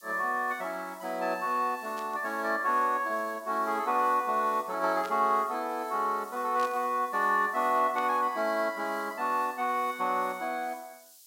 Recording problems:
hiss; SNR 23 dB
static burst; 4 times, first at 2 s; peak -11 dB vs average level

